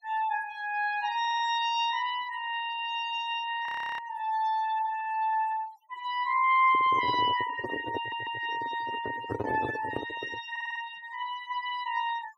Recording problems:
denoising artefacts; signal-to-artefact ratio 18 dB
stutter; at 1 s, at 8 s and at 11 s
audio freezing; at 3.5 s
microphone handling noise; from 6.5 to 10 s; peak +1 dB vs average level

